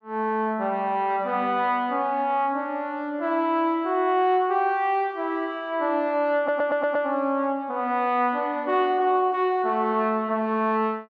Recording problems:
audio stuttering; at 6.5 s

